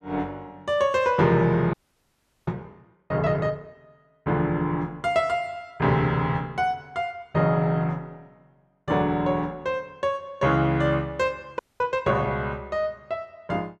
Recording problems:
frozen audio; at 1.5 s for 0.5 s and at 12 s

